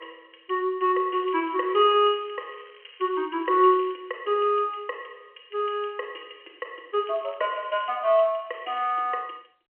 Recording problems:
phone line; 320 Hz to 3.3 kHz, G.711
crackle; from 1 to 4 s, at 7 s and at 8.5 s; loose cable, SNR 27 dB

